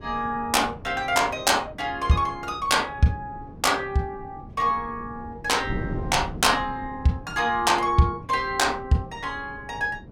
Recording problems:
wind on the microphone; below 280 Hz, SNR 15 dB

